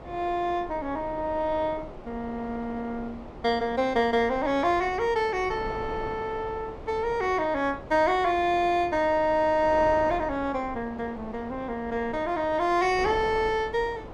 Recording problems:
wind on the microphone; below 730 Hz, SNR 14 dB

